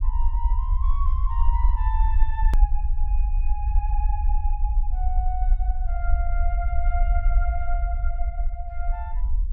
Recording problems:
rumble; below 50 Hz, SNR -11 dB
hard cut with a click; at 2.5 s

